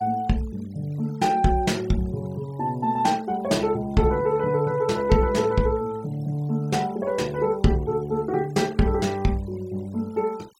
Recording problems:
noise reduction artefacts; signal-to-artefact ratio 24 dB

